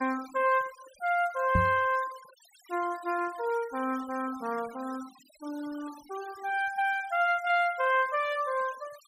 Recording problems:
denoising artefacts; signal-to-artefact ratio 21 dB
knock on the microphone; at 1.5 s; peak +5 dB vs average level

